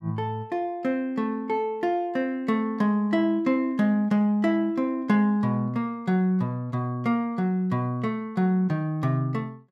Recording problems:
none

